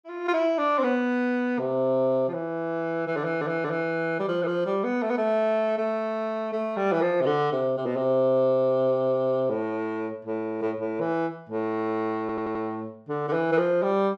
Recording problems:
audio stuttering; at 3 s and at 12 s

